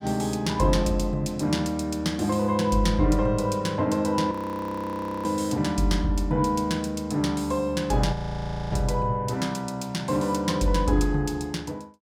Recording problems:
frozen audio; at 4.5 s for 1 s and at 8 s for 0.5 s

